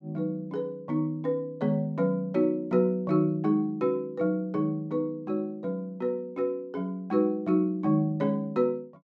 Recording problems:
none

